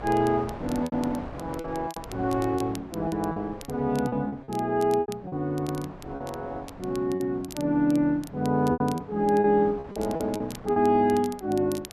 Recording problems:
wind on the microphone; below 880 Hz, SNR 17 dB
crackling; vinyl, SNR 21 dB
packet loss; 9% of the sound replaced, filled with repeated pitch periods

